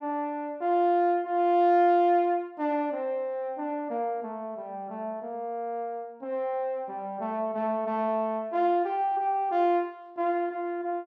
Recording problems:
none

